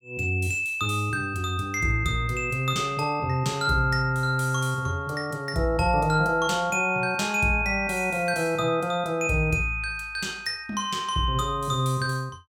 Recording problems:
none

